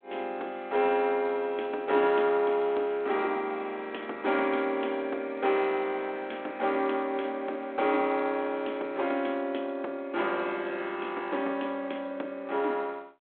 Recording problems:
telephone audio; 240 Hz to 3.5 kHz, G.726

